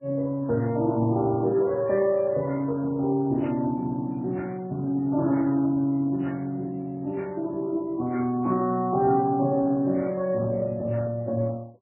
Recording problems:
codec artefacts; Speex, then MP3, log-spectral distance 2 dB

